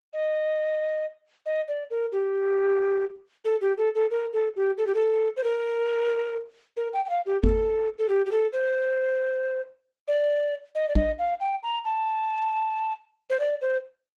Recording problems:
codec artefacts; Opus, log-spectral distance 2 dB
microphone thump; at 7.5 s and at 11 s; peak +7 dB vs average level

